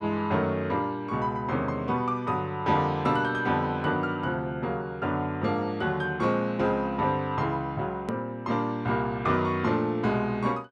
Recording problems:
click at an edit; at 8 s

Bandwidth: 12 kHz